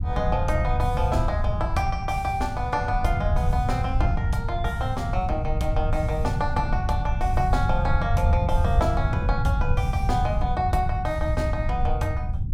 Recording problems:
rumble; below 100 Hz, SNR -1 dB

